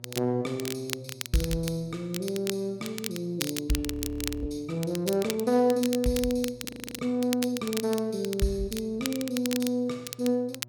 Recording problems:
hum; 60 Hz, harmonics up to 720 Hz, SNR 22 dB
crackling; vinyl, SNR 8 dB
frozen audio; at 4 s for 0.5 s and at 6.5 s

